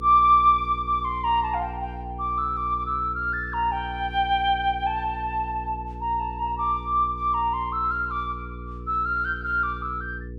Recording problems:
hum; 60 Hz, harmonics up to 480 Hz, SNR 13 dB

